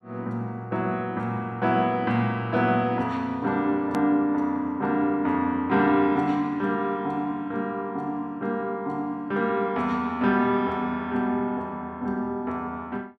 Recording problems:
click at an edit; at 4 s

